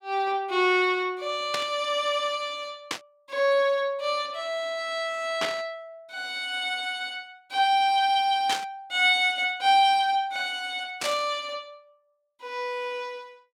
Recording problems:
static burst; 5 times, first at 1.5 s; peak 0 dB vs average level

